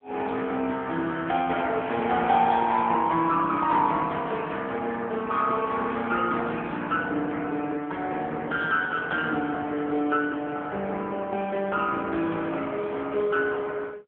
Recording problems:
telephone audio; 170 Hz to 3.4 kHz, AMR-NB

